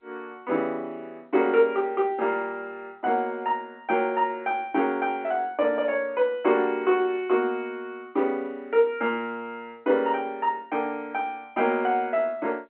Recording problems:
phone line; 240 Hz to 3.1 kHz, G.711

